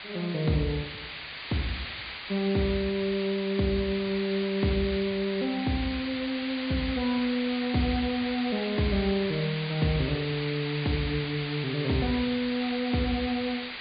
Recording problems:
treble cut off; nothing above 4.8 kHz
background hiss; SNR 7 dB
crackling; from 2.5 to 5.5 s and from 7.5 to 9 s; loose cable, SNR 26 dB

